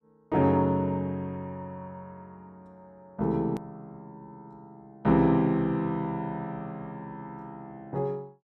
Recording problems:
click at an edit; at 3.5 s

